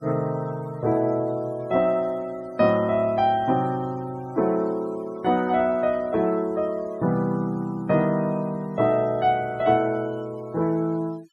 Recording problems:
noise reduction artefacts; signal-to-artefact ratio 26 dB

